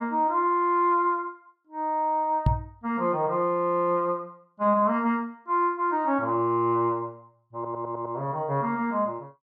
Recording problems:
microphone bump; at 2.5 s; peak +7 dB vs average level
audio stuttering; at 7.5 s

